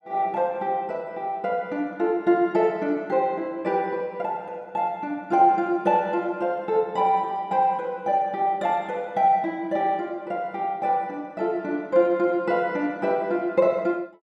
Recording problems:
none

